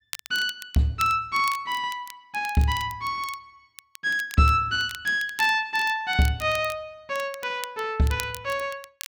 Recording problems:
crackle; vinyl, SNR 16 dB

